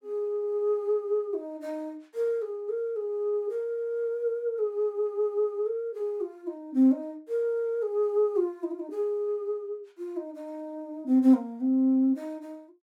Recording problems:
none

